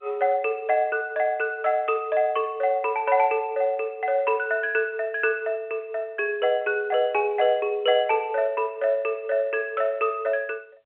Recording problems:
telephone audio; 280 Hz to 3.3 kHz, G.711

